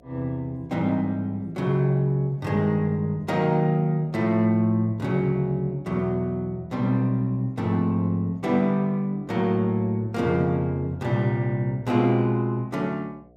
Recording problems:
hum; 60 Hz, harmonics up to 720 Hz, SNR 30 dB

